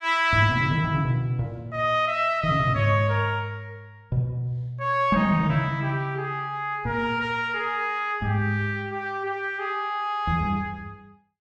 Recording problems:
none

